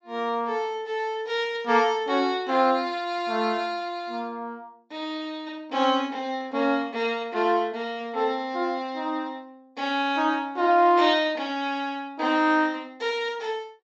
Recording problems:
treble cut off; nothing above 8 kHz

